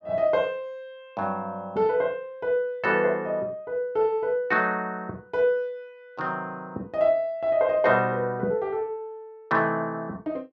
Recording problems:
none

